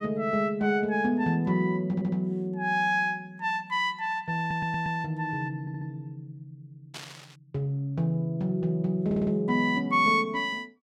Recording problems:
audio stuttering; 4 times, first at 2 s
static burst; at 7 s; peak -8 dB vs average level

